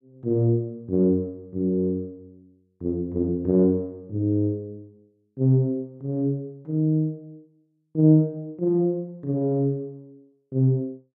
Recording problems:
none

